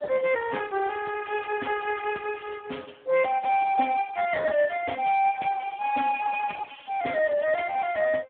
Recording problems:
telephone audio; 300 Hz to 3.1 kHz, Speex

